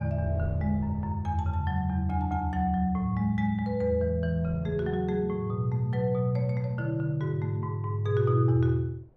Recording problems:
wind on the microphone; below 300 Hz, SNR 22 dB

